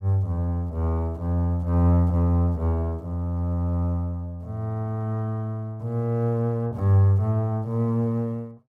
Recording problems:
none

